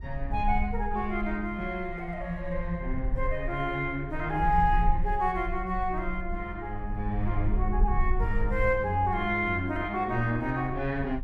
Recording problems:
rumble; below 52 Hz, SNR 6 dB

